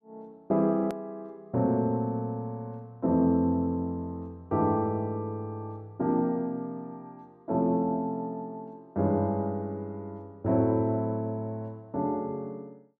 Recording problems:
edit click; at 1 s

